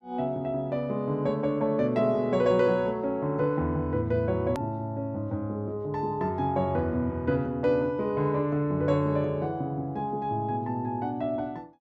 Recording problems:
hard cut with a click; at 4.5 s

